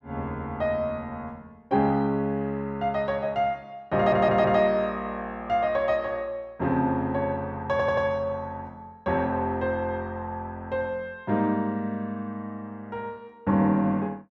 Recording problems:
stutter; at 4 s and at 7.5 s

